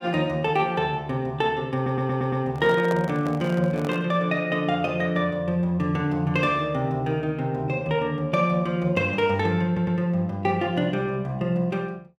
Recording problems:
audio stuttering; at 2 s and at 9.5 s
handling noise; from 2.5 to 4 s; peak -3 dB vs average level

